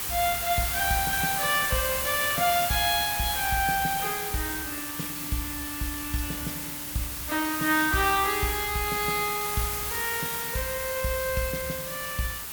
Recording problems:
background hiss; slope 0 dB per octave, SNR 1 dB

